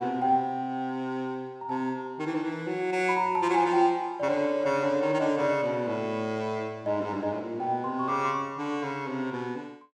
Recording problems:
none

